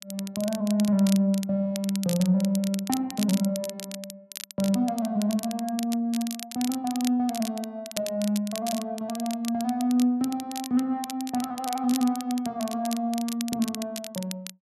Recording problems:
crackling; vinyl, SNR 11 dB

